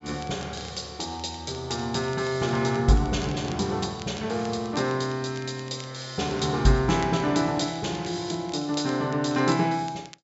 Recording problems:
treble missing; nothing above 8 kHz
crackle; vinyl, SNR 22 dB

